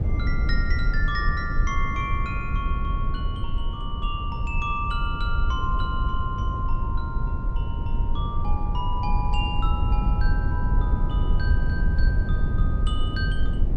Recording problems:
low-frequency rumble; below 80 Hz, SNR -5 dB

